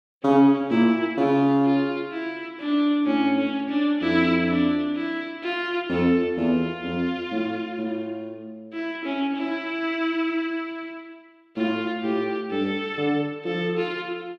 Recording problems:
none

